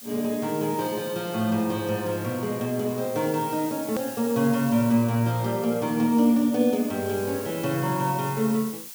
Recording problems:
hiss; slope +3 dB per octave, SNR 14 dB
click at an edit; at 4 s

